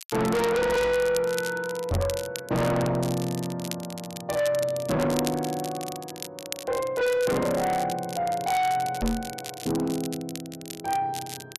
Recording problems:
distorted audio; soft clipping, signal-to-distortion ratio 6 dB
crackling; vinyl, SNR 12 dB
microphone bump; at 2 s and at 9 s; peak +4 dB vs average level

